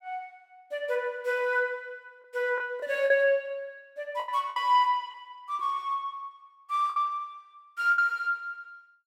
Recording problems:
lost packets; 5% of the sound replaced, filled with the last packet

